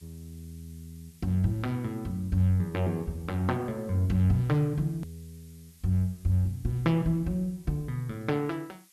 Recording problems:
background hiss; slope +3 dB per octave, SNR 28 dB
click at an edit; at 5 s

